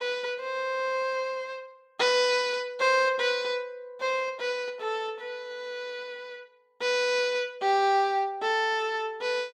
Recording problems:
none

